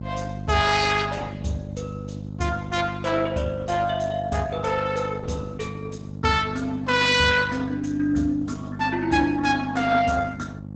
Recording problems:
codec artefacts; Opus, log-spectral distance 4 dB, nothing above 7.8 kHz
electrical hum; 50 Hz, harmonics up to 600 Hz, SNR 10 dB

